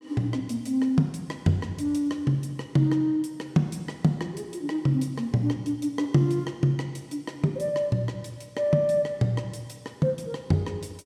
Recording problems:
none

